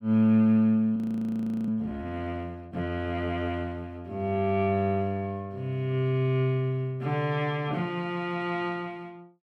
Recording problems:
audio freezing; at 1 s for 0.5 s

